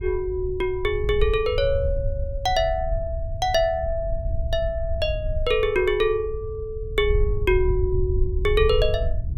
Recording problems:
low-frequency rumble; below 76 Hz, SNR 5 dB

